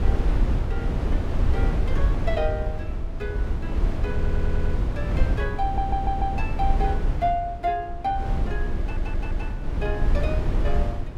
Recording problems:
wind noise; below 82 Hz, SNR -4 dB
stutter; at 4 s, at 5.5 s and at 9 s

